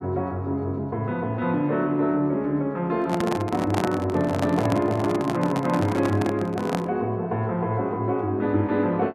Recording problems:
handling noise; from 3 to 7 s; peak +1 dB vs average level

